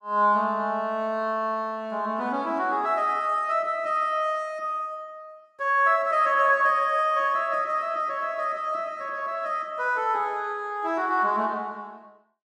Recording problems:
none

